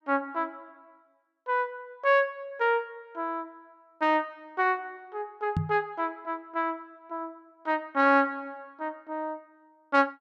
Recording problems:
knock on the microphone; at 5.5 s; peak +4 dB vs average level

